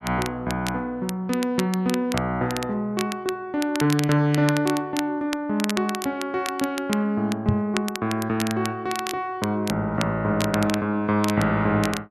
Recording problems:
crackle; vinyl, SNR 10 dB
knock on the microphone; at 7.5 s; peak +6 dB vs average level

